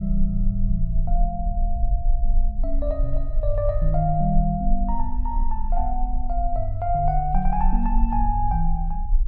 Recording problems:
rumble; below 40 Hz, strongest tone 20 Hz, SNR 0 dB

